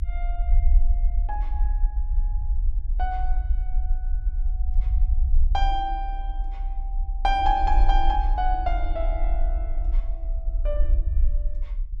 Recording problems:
rumble; below 48 Hz, SNR -2 dB

